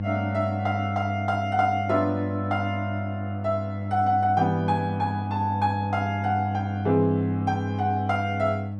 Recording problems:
electrical hum; 50 Hz, harmonics up to 600 Hz, SNR 4 dB

